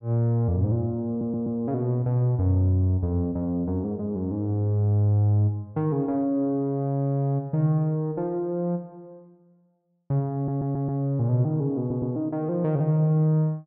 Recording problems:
audio stuttering; at 1 s, at 10 s and at 12 s

